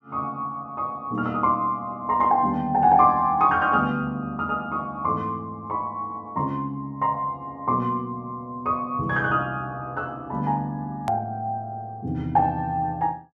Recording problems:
click at an edit; at 11 s

